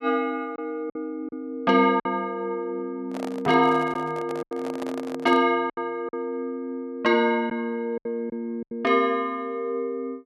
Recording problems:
lost packets; 5% of the sound replaced, filled with silence
handling noise; from 3 to 5.5 s; peak -3 dB vs average level

